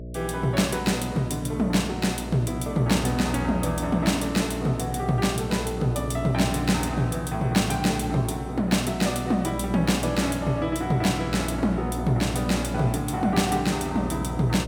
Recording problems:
mains hum; 60 Hz, harmonics up to 660 Hz, SNR 9 dB

